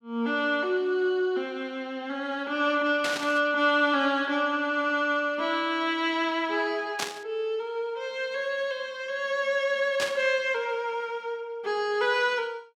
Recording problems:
burst of static; at 3 s, at 7 s and at 10 s; peak +1 dB vs average level

